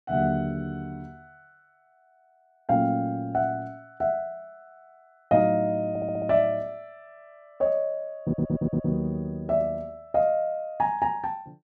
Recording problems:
stutter; at 6 s and at 8 s

